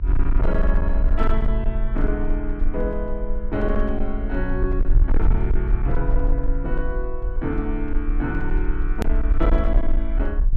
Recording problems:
distortion; hard clipping, uneven, signal-to-distortion ratio 11 dB
electrical hum; 50 Hz, harmonics up to 600 Hz, SNR 18 dB
rumble; below 44 Hz, strongest tone 20 Hz, SNR -3 dB
edit click; at 9 s

